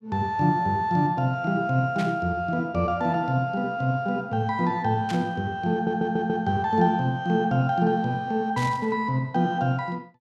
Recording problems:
static burst; at 2 s, at 5 s and at 8.5 s; peak -7 dB vs average level
audio stuttering; at 5.5 s

